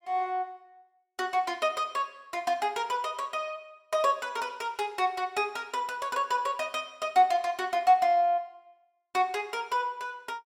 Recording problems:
none

